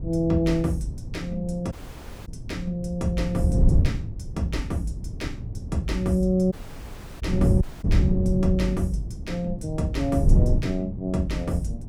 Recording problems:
wind on the microphone; below 130 Hz, SNR 1 dB
dropout; at 1.5 s for 0.5 s, at 6.5 s for 0.5 s and at 7.5 s

